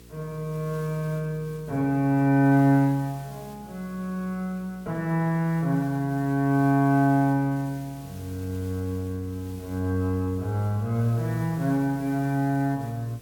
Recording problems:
electrical hum; 60 Hz, harmonics up to 480 Hz, SNR 25 dB
hiss; slope -1 dB per octave, SNR 25 dB

